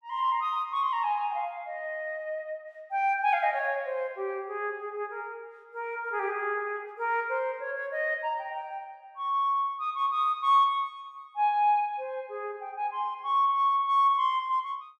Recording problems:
none

